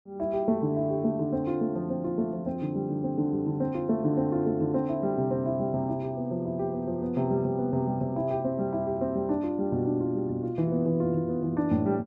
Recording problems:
none

